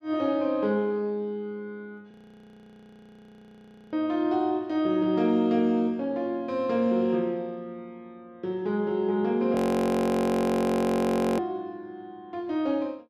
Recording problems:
audio freezing; at 2 s for 2 s and at 9.5 s for 2 s

